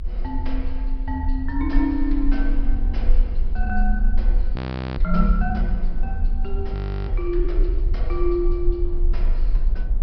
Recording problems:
treble missing; nothing above 5.5 kHz
rumble; below 40 Hz, strongest tone 26 Hz, SNR -2 dB
wind noise; below 250 Hz, SNR 14 dB
audio freezing; at 4.5 s and at 6.5 s

